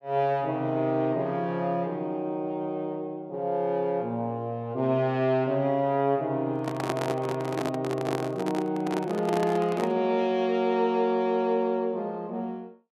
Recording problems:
handling noise; from 6.5 to 10 s; peak +2 dB vs average level

